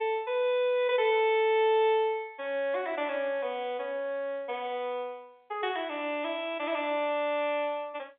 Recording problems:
phone line; 300 Hz to 3.6 kHz, G.711

